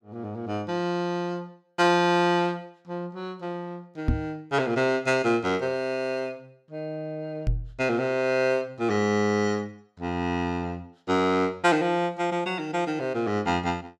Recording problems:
knock on the microphone; at 4 s and at 7.5 s; peak +5 dB vs average level

